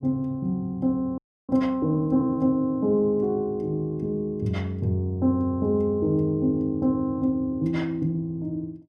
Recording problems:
frozen audio; at 1 s

